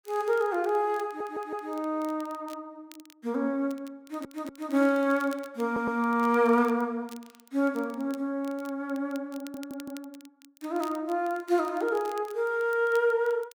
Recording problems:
crackle; vinyl, SNR 25 dB
audio stuttering; 4 times, first at 1 s

